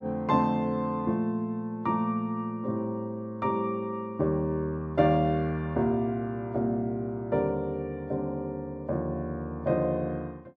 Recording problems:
none

